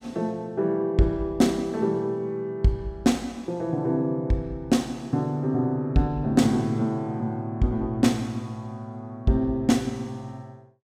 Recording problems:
none

